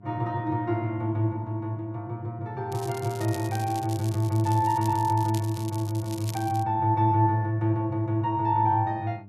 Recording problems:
electrical hum; 50 Hz, harmonics up to 700 Hz, SNR 22 dB
crackle; from 2.5 to 6.5 s; loose cable, SNR 17 dB

